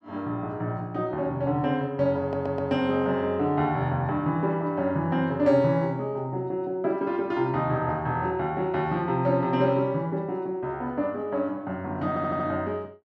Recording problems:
stutter; at 2 s and at 12 s

